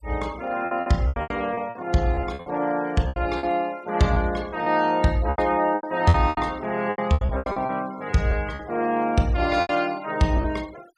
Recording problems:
noise reduction artefacts; signal-to-artefact ratio 23 dB
lost packets; 14% of the sound replaced, filled with repeated pitch periods

